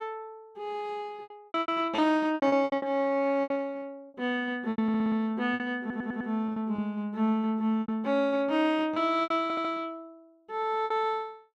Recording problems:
packet loss; 12% of the sound replaced, filled with repeated pitch periods
stutter; at 5 s, at 6 s and at 9.5 s

